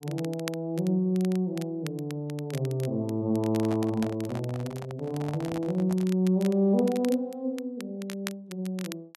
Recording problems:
crackle; vinyl, SNR 18 dB
microphone handling noise; from 3.5 to 6 s; peak -5 dB vs average level

